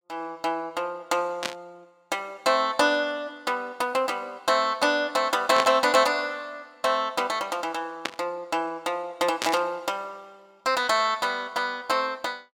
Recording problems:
burst of static; 4 times, first at 1.5 s; peak +3 dB vs average level

